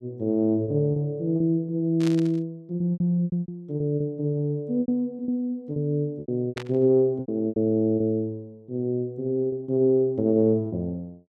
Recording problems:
packet loss; 10% of the sound replaced, filled with repeated pitch periods
burst of static; at 2 s and at 6.5 s; peak -6 dB vs average level

